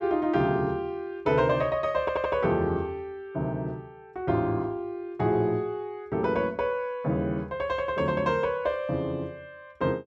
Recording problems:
audio stuttering; at 2 s

